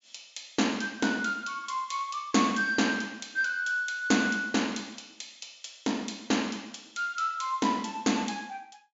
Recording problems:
low-pass filter; nothing above 7.4 kHz

